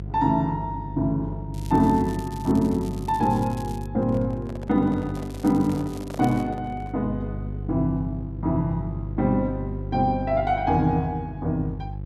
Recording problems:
electrical hum; 50 Hz, harmonics up to 500 Hz, SNR 9 dB
crackling; from 1.5 to 4 s and from 5 to 6.5 s; loose cable, SNR 22 dB
handling noise; from 4 to 7 s; peak -9 dB vs average level

